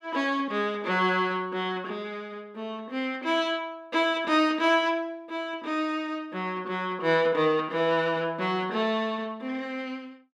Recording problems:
none

